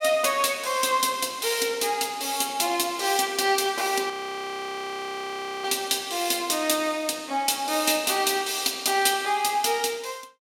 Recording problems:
frozen audio; at 4 s for 1.5 s

